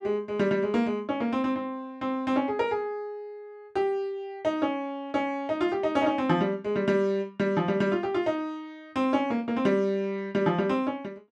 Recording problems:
none

